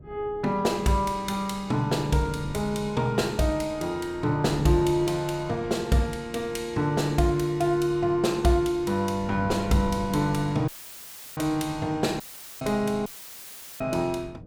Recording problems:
wind on the microphone; below 250 Hz, SNR 17 dB
dropout; at 11 s for 0.5 s, at 12 s and at 13 s for 0.5 s; filled with static

